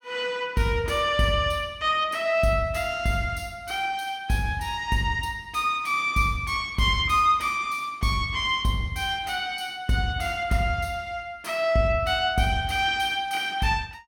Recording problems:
none

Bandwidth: 17 kHz